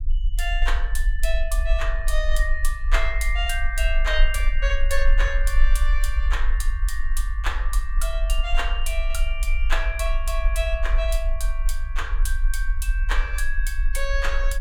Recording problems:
rumble; below 42 Hz, strongest tone 20 Hz, SNR -3 dB

